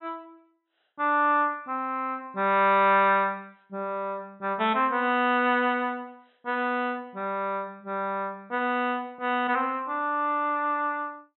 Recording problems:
treble missing; nothing above 4 kHz

